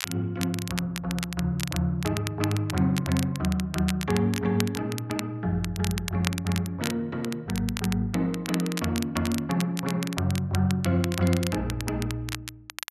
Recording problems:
crackle; vinyl, SNR 9 dB

